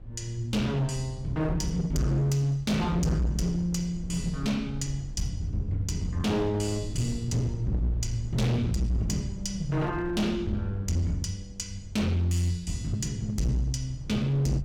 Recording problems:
distortion; hard clipping, uneven, signal-to-distortion ratio 8 dB
wind noise; below 110 Hz, SNR 14 dB

